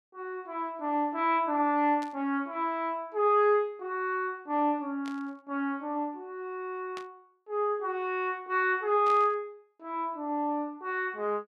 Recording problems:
burst of static; 4 times, first at 2 s; peak -10 dB vs average level

